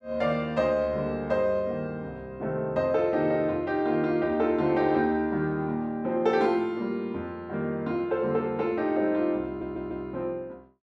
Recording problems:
audio stuttering; at 9.5 s

